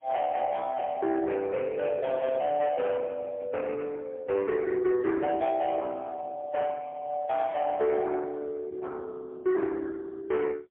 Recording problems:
telephone audio; 300 Hz to 2.9 kHz, AMR-NB, then MP3
distortion; soft clipping, signal-to-distortion ratio 11 dB

